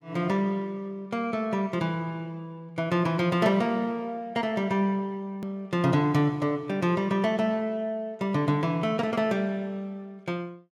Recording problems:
click at an edit; at 5.5 s

